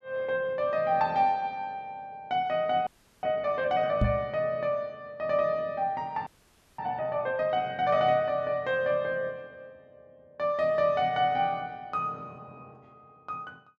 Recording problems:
frozen audio; at 3 s and at 6.5 s for 0.5 s
microphone thump; at 4 s; peak +6 dB vs average level

